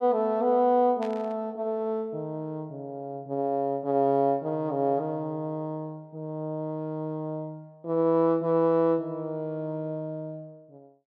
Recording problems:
burst of static; at 1 s; peak -12 dB vs average level

